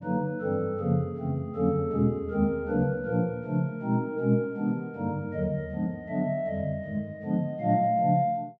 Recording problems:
none

